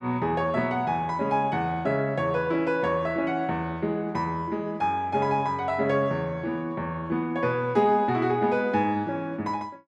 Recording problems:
none

